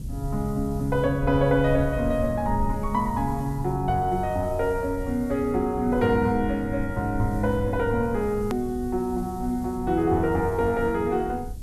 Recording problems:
hiss; slope +3 dB per octave, SNR 27 dB
rumble; below 110 Hz, SNR 10 dB
hard cut with a click; at 8.5 s

